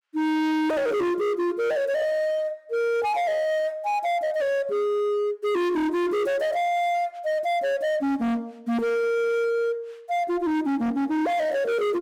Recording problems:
distortion; hard clipping, signal-to-distortion ratio 7 dB

